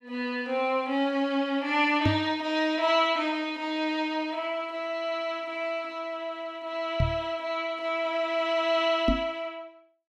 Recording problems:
microphone thump; at 2 s, at 7 s and at 9 s; peak +5 dB vs average level

